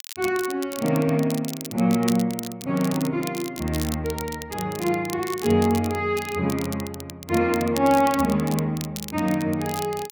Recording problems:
crackling; vinyl, SNR 13 dB

